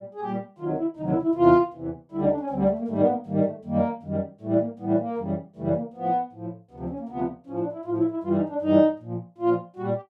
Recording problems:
none

